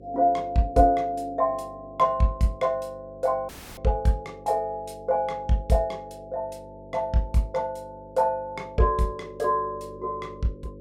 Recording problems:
hum; 50 Hz, harmonics up to 550 Hz, SNR 20 dB
audio cutting out; at 3.5 s

